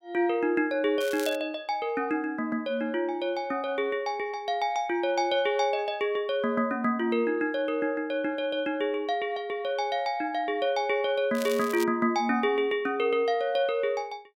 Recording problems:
crackle; at 1 s and at 11 s; loose cable, SNR 14 dB

